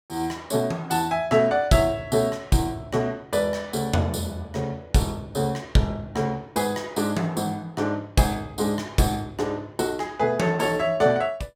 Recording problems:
none

